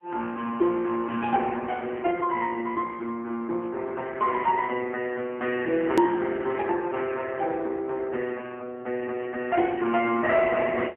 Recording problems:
phone line; 260 Hz to 3 kHz, AMR-NB, then MP3
click at an edit; at 6 s

